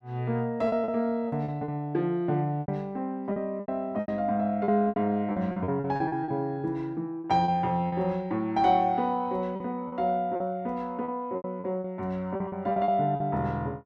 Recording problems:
lost packets; 11% of the sound replaced, filled with repeated pitch periods

